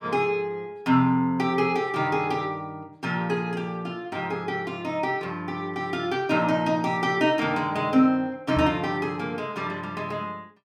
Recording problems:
knock on the microphone; at 8.5 s; peak -1 dB vs average level

